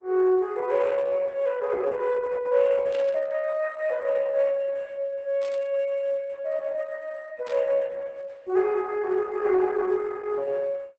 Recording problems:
codec artefacts; Opus, log-spectral distance 3 dB, nothing above 7.8 kHz
static burst; at 3 s, at 5.5 s and at 7.5 s; peak -14 dB vs average level

